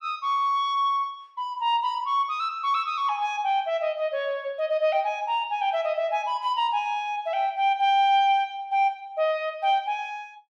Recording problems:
none

